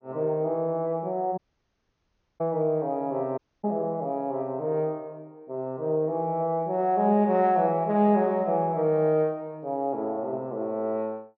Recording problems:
treble missing; nothing above 6.7 kHz
audio cutting out; at 1.5 s for 1 s and at 3.5 s

